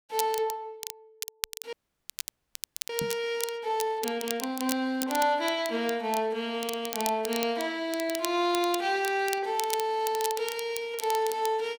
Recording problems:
crackle; vinyl, SNR 9 dB
frozen audio; at 1.5 s for 1 s
microphone thump; at 3 s; peak -4 dB vs average level

